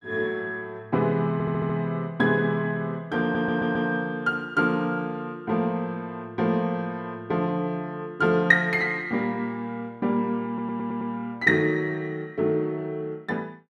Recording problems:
audio stuttering; at 1.5 s, at 3 s and at 10 s

